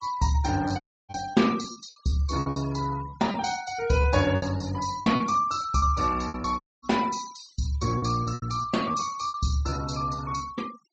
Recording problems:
treble cut off; nothing above 8 kHz
denoising artefacts; signal-to-artefact ratio 17 dB
lost packets; 10% of the sound replaced, filled with repeated pitch periods
dropout; at 1 s and at 6.5 s

